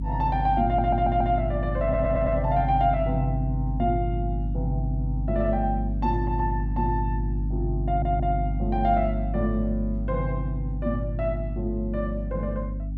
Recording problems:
hum; 50 Hz, harmonics up to 300 Hz, SNR 2 dB
audio stuttering; at 0.5 s, at 2 s and at 8 s

